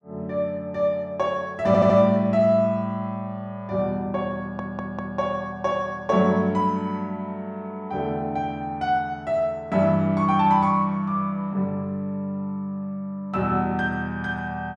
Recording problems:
stutter; at 1.5 s and at 4.5 s

